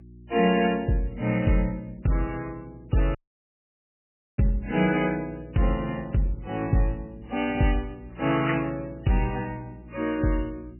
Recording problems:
lossy compression; MP3, log-spectral distance 3 dB, nothing above 2.5 kHz
mains hum; 60 Hz, harmonics up to 360 Hz, SNR 20 dB
dropout; at 3 s for 1 s

